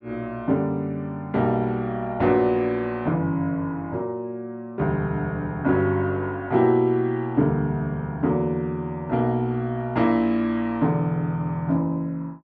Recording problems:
none

